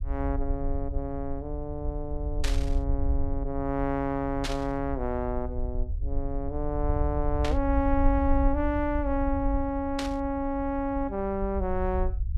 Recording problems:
low-frequency rumble; below 64 Hz, SNR 3 dB
burst of static; 4 times, first at 2.5 s; peak +2 dB vs average level

